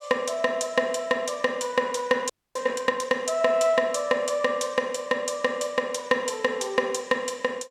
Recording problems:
audio freezing; at 2.5 s

